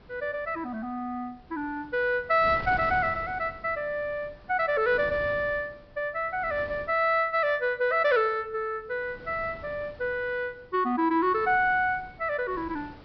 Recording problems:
treble missing; nothing above 5.5 kHz
wind noise; below 680 Hz, SNR 19 dB

